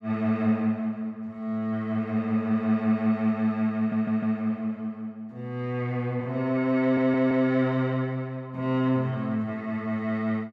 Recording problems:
stutter; at 4 s and at 7 s

